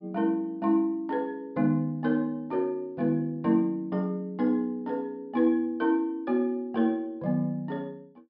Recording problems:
low-pass filter; nothing above 5.5 kHz

